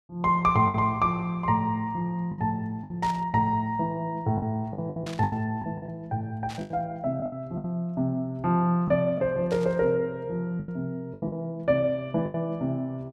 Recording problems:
packet loss; 8% of the sound replaced, filled with the last packet
static burst; 4 times, first at 3 s; peak -9 dB vs average level

